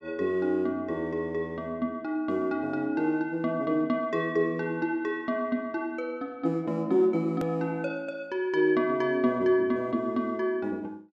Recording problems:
hard cut with a click; at 7.5 s

